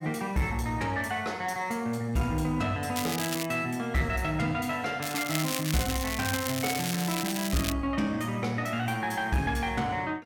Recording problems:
distorted audio; soft clipping, signal-to-distortion ratio 11 dB
crackle; at 3 s and from 5 to 7.5 s; loose cable, SNR 4 dB

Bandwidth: 17 kHz